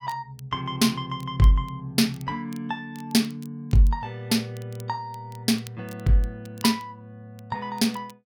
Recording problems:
crackle; vinyl, SNR 26 dB

